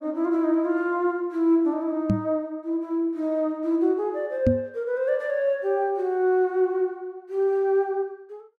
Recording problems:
knock on the microphone; at 2 s and at 4.5 s; peak +6 dB vs average level

